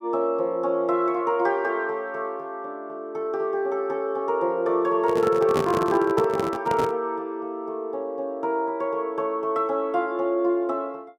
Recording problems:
microphone handling noise; from 5 to 7 s; peak +2 dB vs average level

